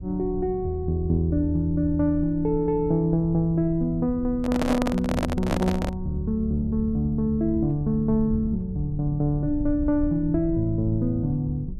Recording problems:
rumble; below 98 Hz, SNR 12 dB
microphone handling noise; from 4.5 to 6 s; peak +1 dB vs average level

